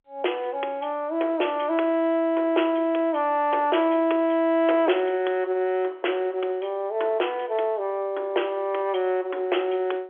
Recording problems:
telephone audio; 280 Hz to 3.4 kHz, G.711

